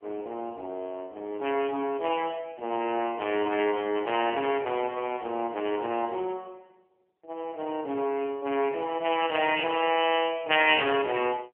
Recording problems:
phone line; 240 Hz to 3.2 kHz, AMR-NB

